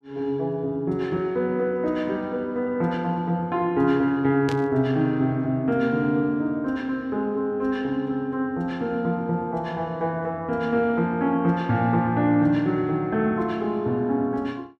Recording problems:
burst of static; at 4.5 s; peak -7 dB vs average level

